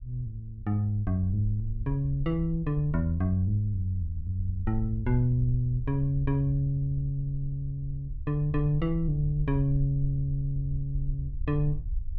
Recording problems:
rumble; below 62 Hz, SNR 9 dB

